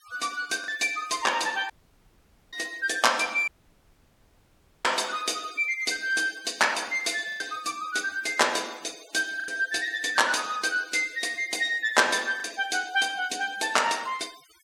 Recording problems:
noise reduction artefacts; signal-to-artefact ratio 20 dB
packet loss; 1.7% of the sound replaced, filled with the last packet
dropout; at 1.5 s for 1 s and at 3.5 s for 1.5 s

